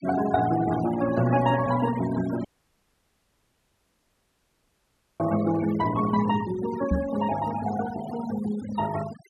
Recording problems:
denoising artefacts; signal-to-artefact ratio 12 dB
audio cutting out; at 2.5 s for 3 s
knock on the microphone; at 7 s; peak +4 dB vs average level

